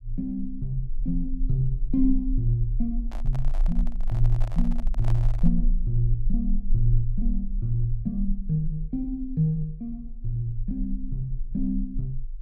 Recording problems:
rumble; below 34 Hz, strongest tone 24 Hz, SNR 3 dB
handling noise; from 3 to 5.5 s; peak -8 dB vs average level

